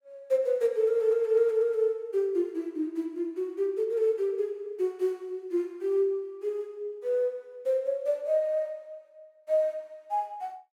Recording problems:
none

